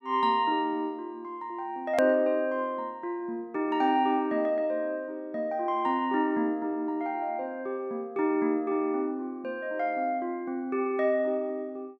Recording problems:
click at an edit; at 2 s

